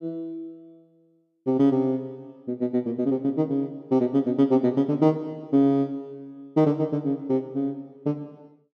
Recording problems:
none

